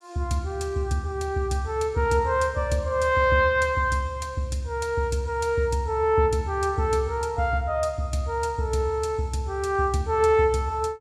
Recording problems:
none

